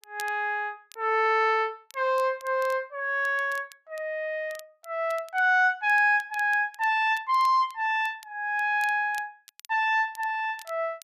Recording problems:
crackling; vinyl, SNR 26 dB

